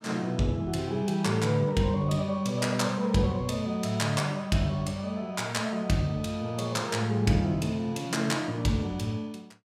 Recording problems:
none

